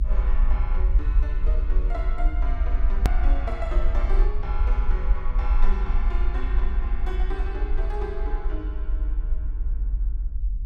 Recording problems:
low-frequency rumble; below 48 Hz, SNR -10 dB
hard cut with a click; at 3 s

